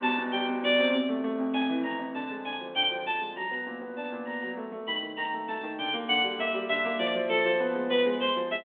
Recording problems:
phone line; 190 Hz to 3.5 kHz, G.726

